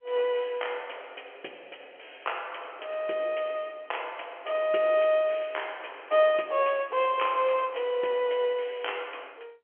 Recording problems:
phone line; 300 Hz to 3.3 kHz, G.711

